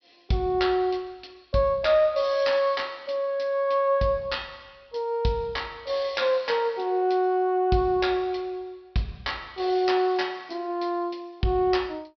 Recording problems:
treble cut off; nothing above 5.5 kHz

